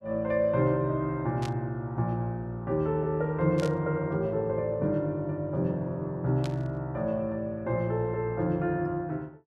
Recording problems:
burst of static; at 1.5 s, at 3.5 s and at 6.5 s; peak -8 dB vs average level

